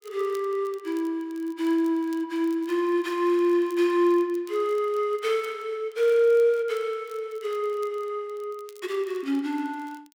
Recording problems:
crackling; vinyl, SNR 29 dB

